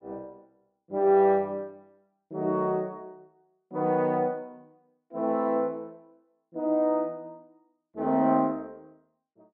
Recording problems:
none

